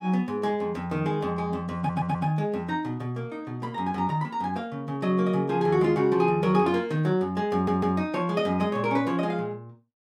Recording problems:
stutter; at 2 s and at 7.5 s

